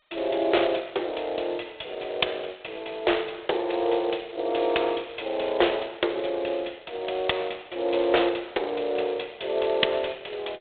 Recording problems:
telephone audio; 320 Hz to 3.7 kHz, G.726

